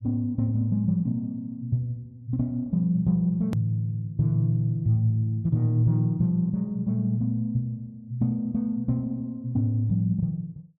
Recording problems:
hard cut with a click; at 3.5 s

